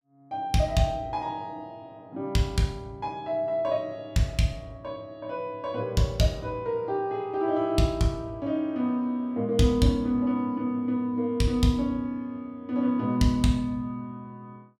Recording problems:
none

